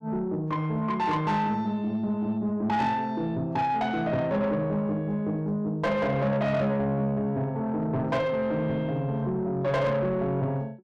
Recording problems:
distorted audio; soft clipping, signal-to-distortion ratio 11 dB

